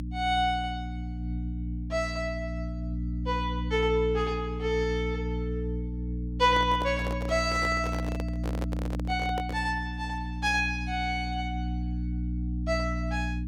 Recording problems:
hum; 60 Hz, harmonics up to 300 Hz, SNR 4 dB
microphone handling noise; from 6.5 to 9.5 s; peak -3 dB vs average level

